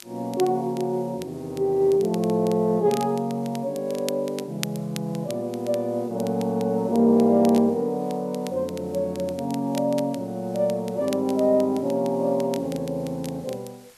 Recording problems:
background hiss; slope -1 dB per octave, SNR 29 dB
crackle; vinyl, SNR 19 dB

